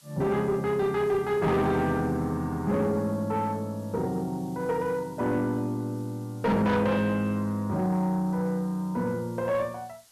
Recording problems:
distorted audio; soft clipping, signal-to-distortion ratio 10 dB
background hiss; slope +1 dB per octave, SNR 27 dB

